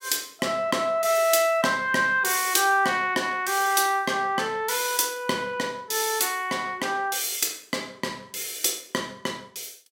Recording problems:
none

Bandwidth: 16.5 kHz